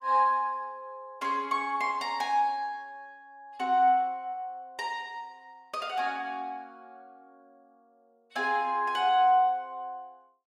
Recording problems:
none

